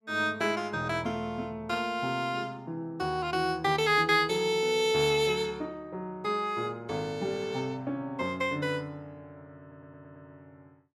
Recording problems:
audio stuttering; at 9.5 s

